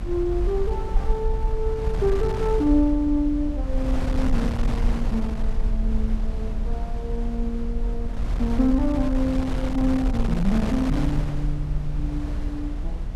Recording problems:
hum; 60 Hz, harmonics up to 660 Hz, SNR 13 dB
low-frequency rumble; below 42 Hz, SNR 4 dB
wind noise; below 290 Hz, SNR 6 dB

